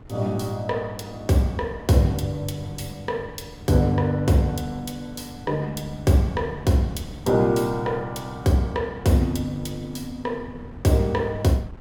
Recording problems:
wind noise; below 230 Hz, SNR 19 dB

